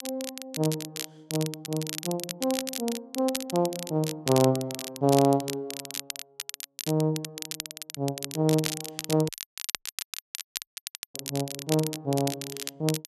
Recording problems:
crackling; vinyl, SNR 7 dB
dropout; at 9.5 s for 2 s

